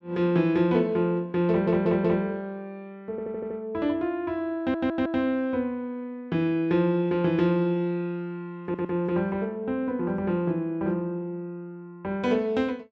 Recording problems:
audio stuttering; 4 times, first at 1.5 s

